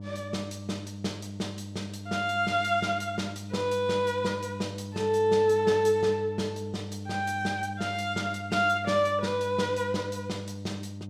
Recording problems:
hum; 50 Hz, harmonics up to 600 Hz, SNR 11 dB

